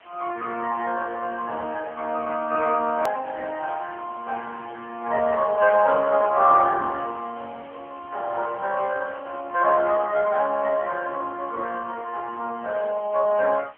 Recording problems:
phone line; 240 Hz to 3.1 kHz, AMR-NB
background hiss; SNR 27 dB
hard cut with a click; at 3 s

